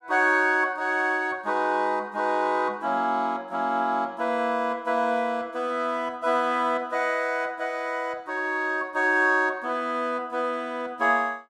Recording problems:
none

